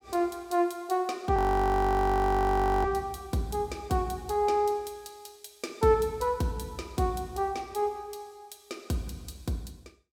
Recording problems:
frozen audio; at 1.5 s for 1.5 s

